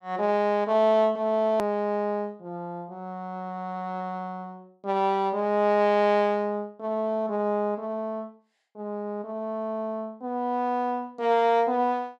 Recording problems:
hard cut with a click; at 1.5 s

